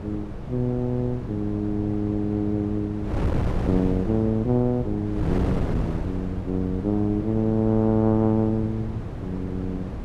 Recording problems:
wind noise; below 290 Hz, SNR 6 dB

